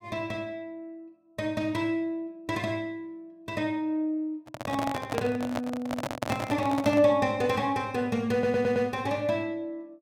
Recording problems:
microphone handling noise; from 4.5 to 7 s; peak +3 dB vs average level
stutter; at 8.5 s

